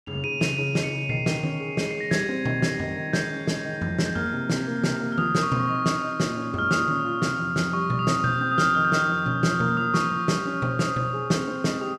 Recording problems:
none

